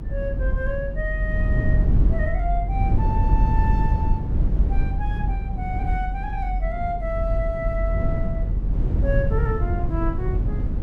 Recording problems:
rumble; below 98 Hz, SNR -6 dB

